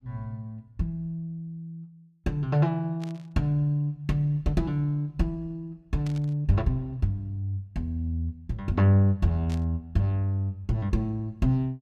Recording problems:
burst of static; at 3 s, at 6 s and at 9.5 s; peak -13 dB vs average level

